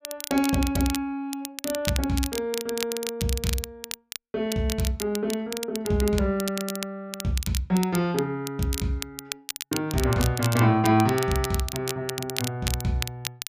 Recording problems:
crackling; vinyl, SNR 8 dB

